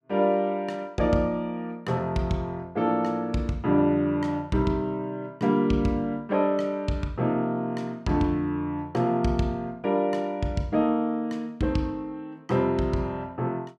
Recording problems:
none

